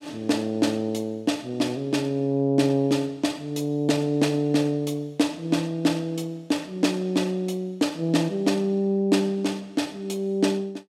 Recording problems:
none

